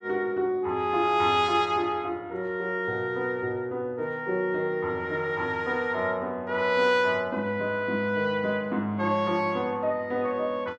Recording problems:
none

